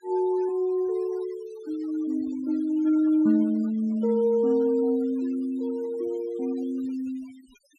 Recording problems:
noise reduction artefacts; signal-to-artefact ratio 25 dB

